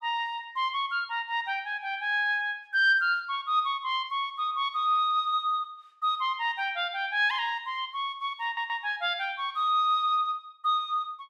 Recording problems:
stutter; at 8.5 s

